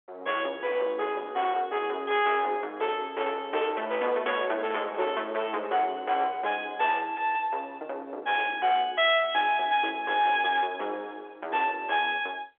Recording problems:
phone line; 300 Hz to 3.5 kHz, G.711
distortion; soft clipping, signal-to-distortion ratio 12 dB

